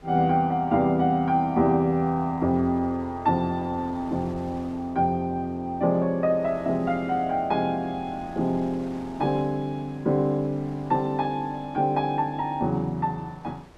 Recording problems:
wind noise; below 990 Hz, SNR 24 dB

